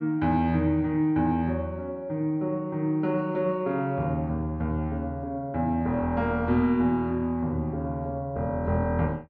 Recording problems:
none

